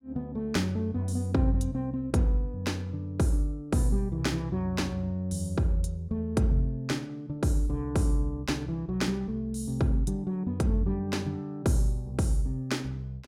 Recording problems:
none

